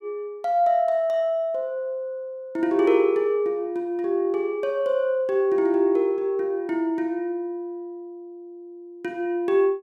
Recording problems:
none

